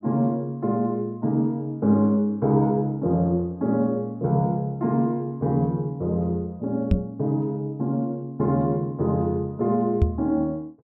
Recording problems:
microphone bump; at 7 s and at 10 s; peak +7 dB vs average level

